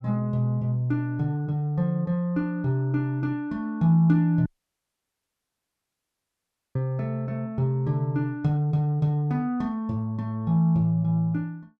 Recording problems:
dropout; at 4.5 s for 2.5 s

